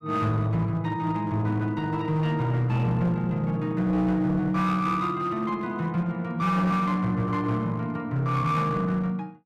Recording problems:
distorted audio; hard clipping, uneven, signal-to-distortion ratio 11 dB

